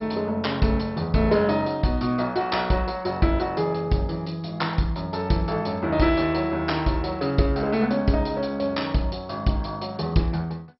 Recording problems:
lossy compression; MP2, log-spectral distance 4 dB, nothing above 5.3 kHz

